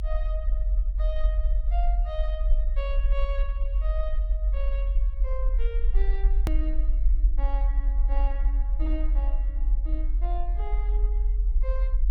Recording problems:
rumble; below 44 Hz, strongest tone 42 Hz, SNR -12 dB
edit click; at 6.5 s

